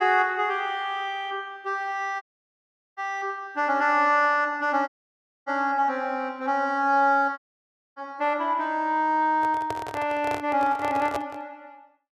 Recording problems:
audio cutting out; at 2 s for 1 s, at 5 s for 0.5 s and at 7.5 s for 0.5 s
handling noise; from 9.5 to 11 s; peak -3 dB vs average level

